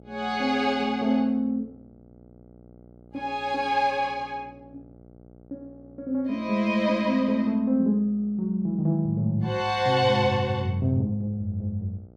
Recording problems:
hum; 60 Hz, harmonics up to 840 Hz, SNR 26 dB

